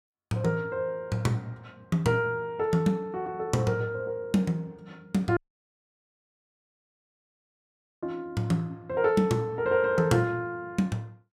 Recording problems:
dropout; at 5.5 s for 2.5 s

